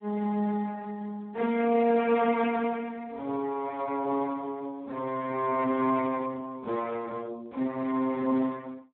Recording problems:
phone line; 240 Hz to 2 kHz, Speex

